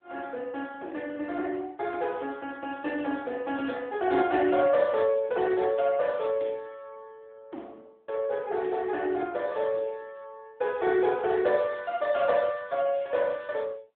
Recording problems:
telephone audio; 240 Hz to 3.6 kHz, AMR-NB

